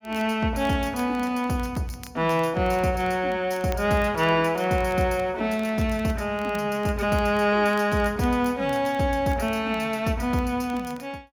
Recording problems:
crackle; vinyl, SNR 26 dB

